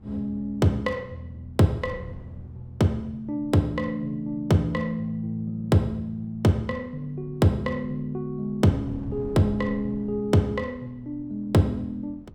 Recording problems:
wind noise; below 200 Hz, SNR 20 dB

